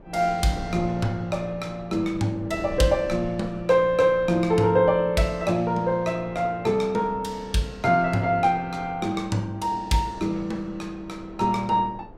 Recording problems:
wind noise; below 440 Hz, SNR 19 dB

